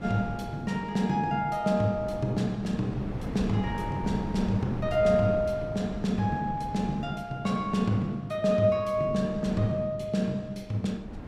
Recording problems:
wind on the microphone; below 340 Hz, SNR 11 dB

